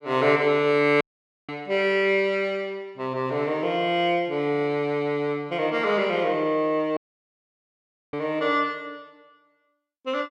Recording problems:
audio cutting out; at 1 s and at 7 s for 1 s

